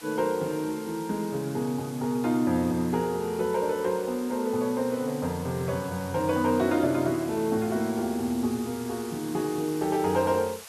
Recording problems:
hiss; SNR 17 dB

